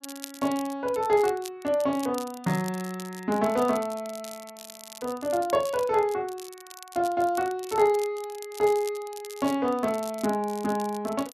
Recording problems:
crackle; vinyl, SNR 17 dB

